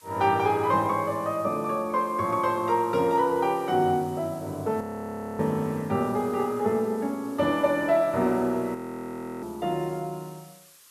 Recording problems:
hiss; SNR 25 dB
audio freezing; at 5 s for 0.5 s and at 9 s for 0.5 s

